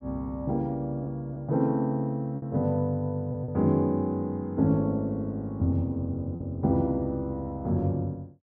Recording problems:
packet loss; 2% of the sound replaced, filled with repeated pitch periods

